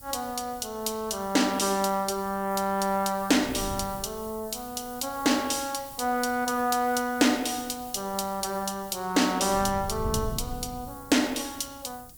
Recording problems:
background hiss; SNR 17 dB
wind noise; below 140 Hz, SNR 14 dB

